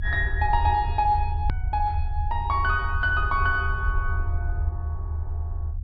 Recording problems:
low-pass filter; nothing above 5.5 kHz
rumble; below 80 Hz, SNR 3 dB
click at an edit; at 1.5 s

